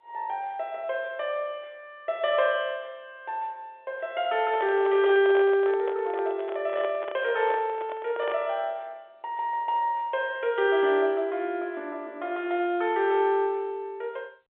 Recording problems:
phone line; 300 Hz to 3.6 kHz, G.711
handling noise; from 4.5 to 8.5 s; peak -5 dB vs average level

